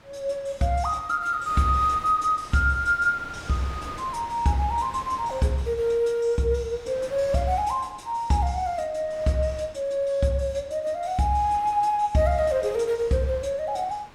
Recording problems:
wind on the microphone; below 1.9 kHz, SNR 19 dB

